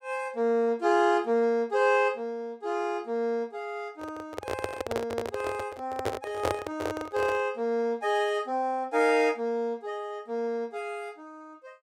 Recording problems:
microphone handling noise; from 4 to 7.5 s; peak +3 dB vs average level

